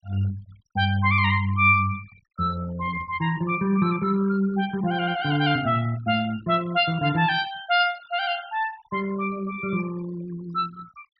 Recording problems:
low-pass filter; nothing above 5.8 kHz
noise reduction artefacts; signal-to-artefact ratio 21 dB

